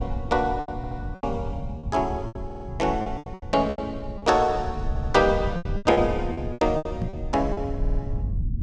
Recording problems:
rumble; below 110 Hz, SNR 8 dB
lost packets; 14% of the sound replaced, filled with repeated pitch periods
stutter; 4 times, first at 1 s
microphone bump; at 7 s; peak -1 dB vs average level

